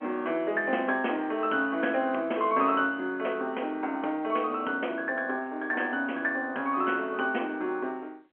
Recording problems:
phone line; 220 Hz to 3.2 kHz, G.711

